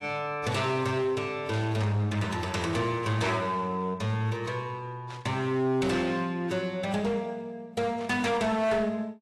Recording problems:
lossy compression; AAC, log-spectral distance 2 dB
distortion; hard clipping, uneven, signal-to-distortion ratio 11 dB
burst of static; at 1.5 s, at 5 s and at 8 s; peak -11 dB vs average level

